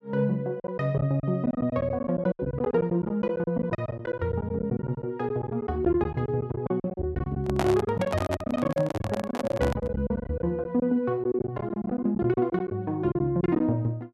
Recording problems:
packet loss; 15% of the sound replaced, filled with silence
handling noise; from 7.5 to 10 s; peak +3 dB vs average level

